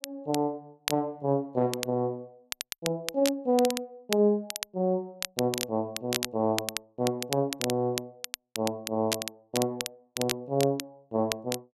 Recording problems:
crackling; vinyl, SNR 6 dB

